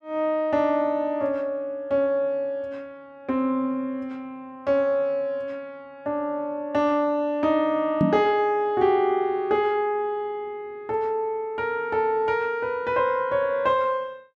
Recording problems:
microphone bump; at 8 s; peak +6 dB vs average level

